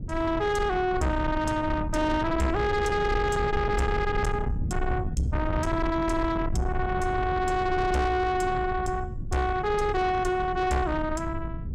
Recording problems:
distorted audio; soft clipping, signal-to-distortion ratio 8 dB
rumble; below 160 Hz, SNR 6 dB

